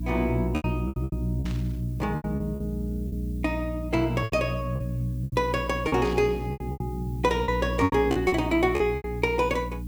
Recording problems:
hum; 60 Hz, harmonics up to 300 Hz, SNR 6 dB
background hiss; slope +1 dB per octave, SNR 28 dB
packet loss; 12% of the sound replaced, filled with repeated pitch periods
static burst; at 1.5 s and at 6 s; peak -10 dB vs average level

